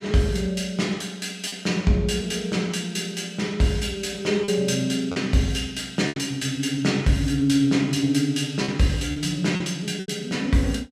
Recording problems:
packet loss; 4% of the sound replaced, filled with repeated pitch periods

